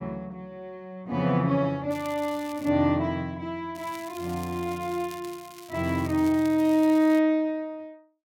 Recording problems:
crackle; at 2 s and from 3.5 to 7 s; loose cable, SNR 21 dB

